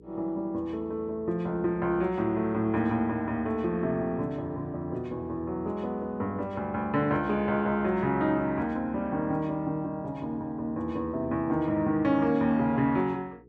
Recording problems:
hum; 60 Hz, harmonics up to 480 Hz, SNR 26 dB

